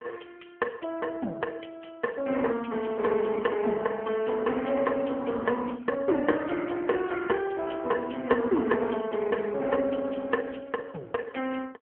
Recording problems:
telephone audio; 240 Hz to 3.2 kHz, AMR-NB

